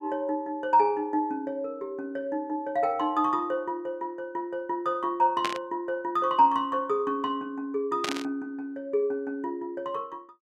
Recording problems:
static burst; at 5.5 s and at 8 s; peak +2 dB vs average level

